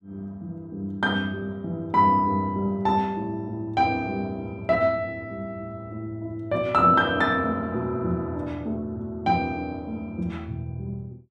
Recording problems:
none

